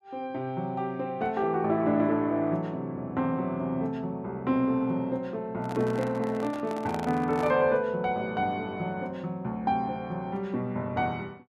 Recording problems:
handling noise; from 5.5 to 7.5 s; peak -4 dB vs average level

